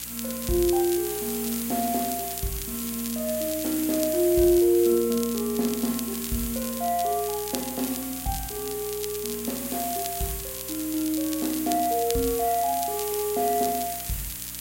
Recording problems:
electrical hum; 60 Hz, harmonics up to 300 Hz, SNR 22 dB
background hiss; slope +1 dB per octave, SNR 5 dB
crackling; vinyl, SNR 11 dB

